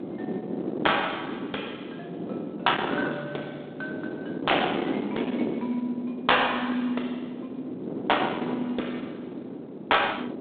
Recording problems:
phone line; 220 Hz to 3.7 kHz, G.726
distorted audio; soft clipping, signal-to-distortion ratio 17 dB
wind on the microphone; below 530 Hz, SNR 6 dB

